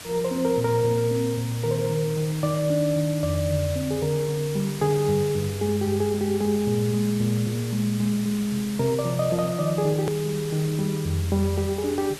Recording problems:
background hiss; slope -1 dB per octave, SNR 13 dB
hard cut with a click; at 10 s

